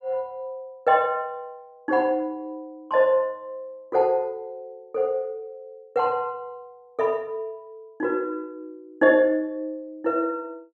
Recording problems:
none

